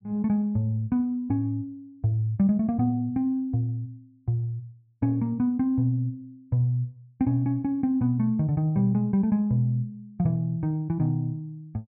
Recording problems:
none

